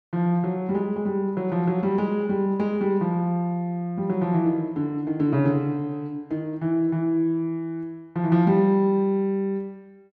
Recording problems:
none

